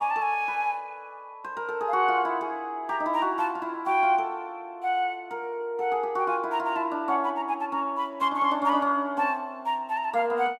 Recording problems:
none

